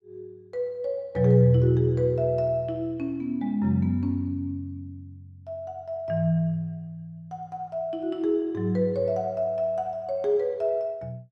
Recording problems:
none

